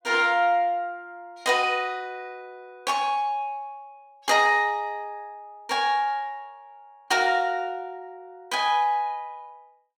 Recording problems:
none

